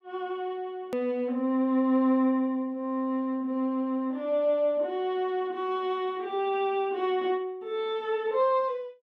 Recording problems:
click at an edit; at 1 s

